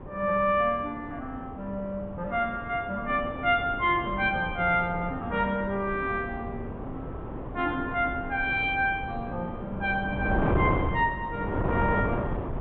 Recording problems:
treble missing; nothing above 4 kHz
wind on the microphone; below 560 Hz, SNR 6 dB

